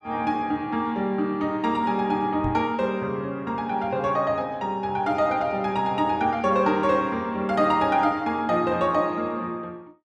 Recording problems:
knock on the microphone; at 2.5 s; peak -3 dB vs average level

